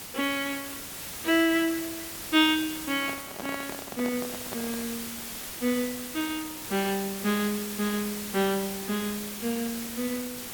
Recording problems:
background hiss; slope -1 dB per octave, SNR 7 dB
handling noise; from 3 to 5 s; peak -5 dB vs average level

